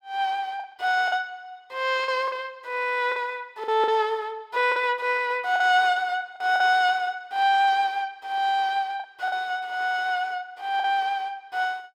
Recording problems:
packet loss; 5% of the sound replaced, filled with the last packet

